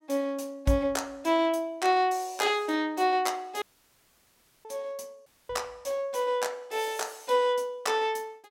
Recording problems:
dropout; at 3.5 s for 1 s and at 5.5 s

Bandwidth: 16.5 kHz